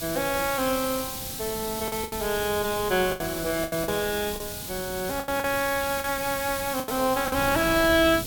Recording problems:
background hiss; slope +3 dB per octave, SNR 7 dB
wind on the microphone; below 270 Hz, SNR 15 dB
packet loss; 8% of the sound replaced, filled with the last packet

